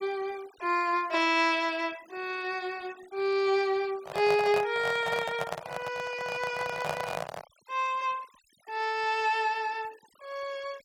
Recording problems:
noise reduction artefacts; signal-to-artefact ratio 22 dB
microphone handling noise; from 4 to 7.5 s; peak +2 dB vs average level

